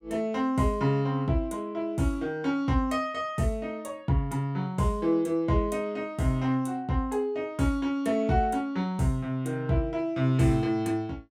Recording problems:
none

